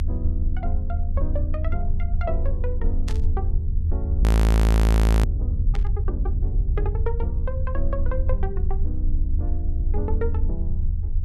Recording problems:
low-frequency rumble; below 78 Hz, strongest tone 22 Hz, SNR -10 dB
static burst; at 3 s and at 5.5 s; peak +2 dB vs average level
frozen audio; at 4 s for 1 s

